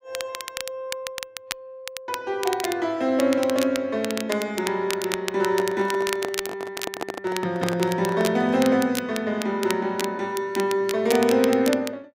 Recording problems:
crackle; vinyl, SNR 10 dB
microphone handling noise; from 5.5 to 8.5 s; peak 0 dB vs average level

